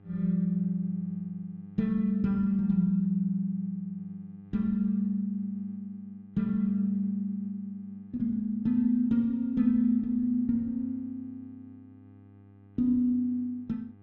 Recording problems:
hum; 50 Hz, harmonics up to 1.2 kHz, SNR 26 dB

